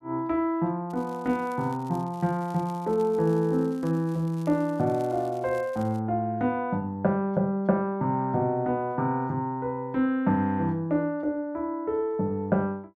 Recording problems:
crackling; from 1 to 6 s; loose cable, SNR 27 dB

